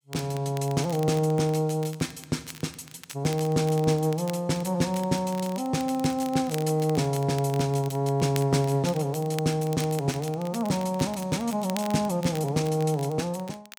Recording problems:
crackling; vinyl, SNR 18 dB

